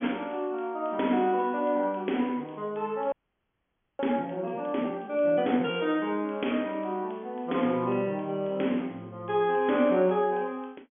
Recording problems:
treble missing; nothing above 3.4 kHz
audio freezing; at 3 s for 1 s

